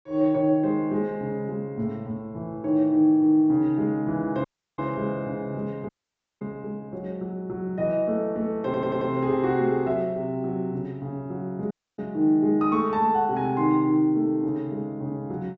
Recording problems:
low-pass filter; nothing above 8 kHz
audio cutting out; at 4.5 s, at 6 s for 0.5 s and at 12 s
audio stuttering; at 8.5 s

